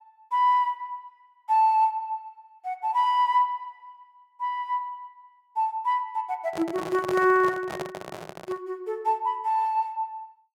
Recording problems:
microphone handling noise; from 6.5 to 8.5 s; peak -4 dB vs average level

